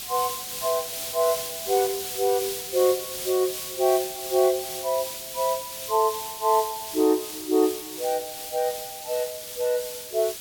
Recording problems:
hiss; SNR 6 dB

